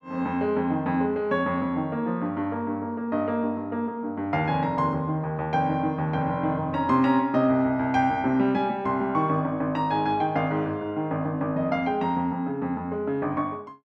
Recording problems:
none

